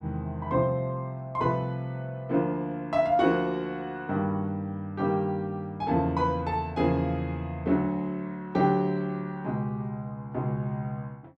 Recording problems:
none

